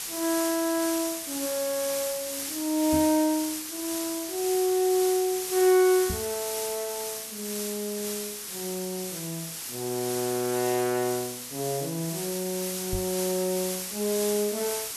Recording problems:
background hiss; slope +1 dB per octave, SNR 4 dB
microphone bump; at 3 s, at 6 s and at 13 s; peak -1 dB vs average level

